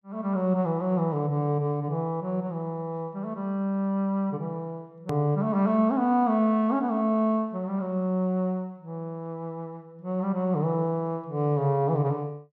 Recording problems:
hard cut with a click; at 5 s

